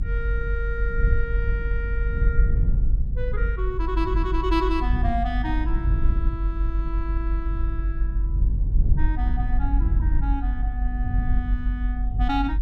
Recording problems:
low-frequency rumble; below 52 Hz, strongest tone 48 Hz, SNR -6 dB

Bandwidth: 13.5 kHz